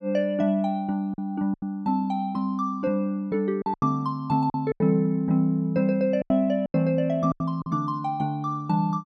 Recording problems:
lost packets; 7% of the sound replaced, filled with silence

